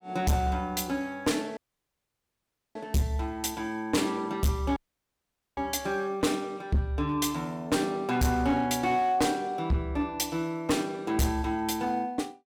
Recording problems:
distorted audio; hard clipping, uneven, signal-to-distortion ratio 7 dB
dropout; at 1.5 s for 1 s and at 5 s for 1 s

